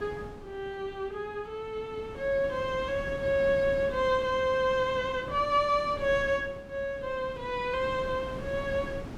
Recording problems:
wind on the microphone; below 430 Hz, SNR 14 dB

